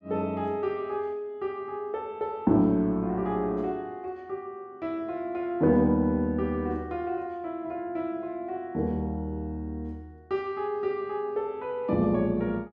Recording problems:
none

